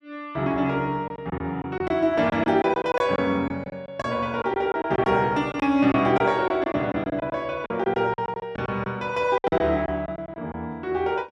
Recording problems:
lost packets; 11% of the sound replaced, filled with silence

